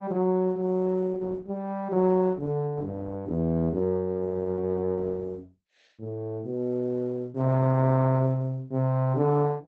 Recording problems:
codec artefacts; Opus, log-spectral distance 2 dB

